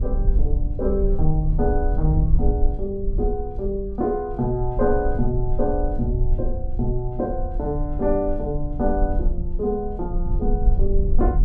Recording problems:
rumble; below 52 Hz, SNR 1 dB

